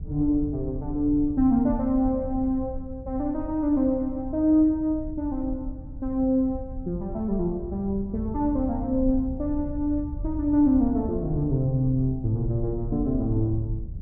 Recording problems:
rumble; below 86 Hz, SNR 11 dB

